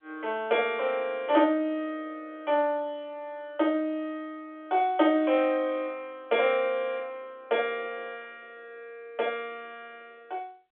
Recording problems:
phone line; 260 Hz to 3.6 kHz, G.711

